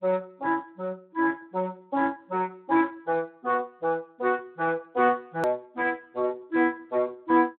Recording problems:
telephone audio; 190 Hz to 2.9 kHz, Speex
edit click; at 5.5 s

